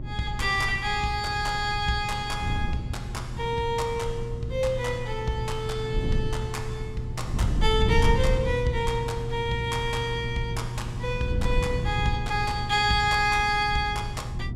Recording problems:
hum; 60 Hz, harmonics up to 360 Hz, SNR 10 dB
wind on the microphone; below 120 Hz, SNR 5 dB

